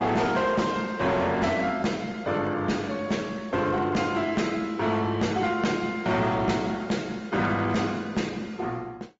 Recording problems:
treble cut off; nothing above 7.6 kHz
codec artefacts; Opus, then MP3, log-spectral distance 3 dB
distorted audio; hard clipping, signal-to-distortion ratio 11 dB

